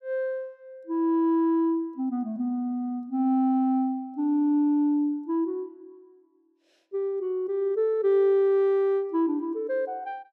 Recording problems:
none

